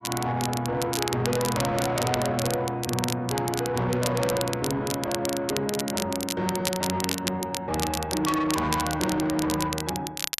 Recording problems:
distortion; soft clipping, signal-to-distortion ratio 11 dB
crackle; vinyl, SNR 5 dB

